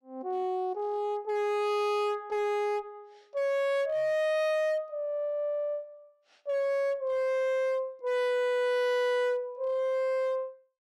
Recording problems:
distortion; hard clipping, signal-to-distortion ratio 8 dB

